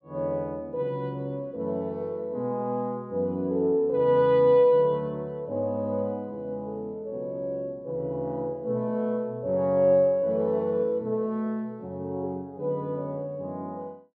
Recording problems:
none

